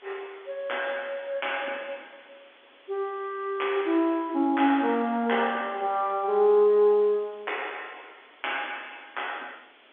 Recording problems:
telephone audio; 240 Hz to 3.5 kHz, G.711
background hiss; SNR 28 dB

